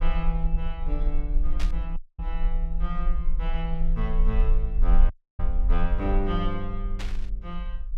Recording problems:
rumble; below 38 Hz, strongest tone 22 Hz, SNR -5 dB
burst of static; at 1.5 s and at 7 s; peak +1 dB vs average level
audio cutting out; at 2 s and at 5 s

